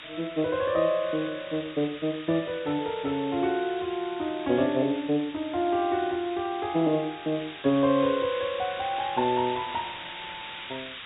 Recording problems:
treble cut off; nothing above 4 kHz
background hiss; SNR 13 dB

